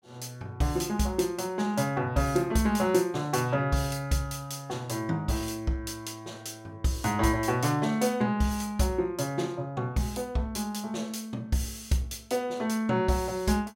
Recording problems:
none

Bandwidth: 16 kHz